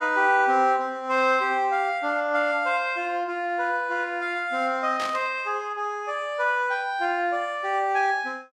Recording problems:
static burst; at 5 s; peak -6 dB vs average level

